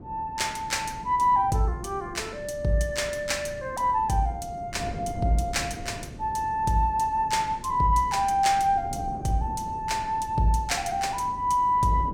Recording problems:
wind noise; below 290 Hz, SNR 15 dB

